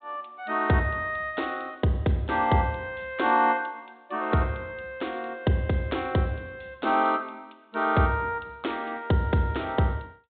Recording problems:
treble cut off; nothing above 4 kHz

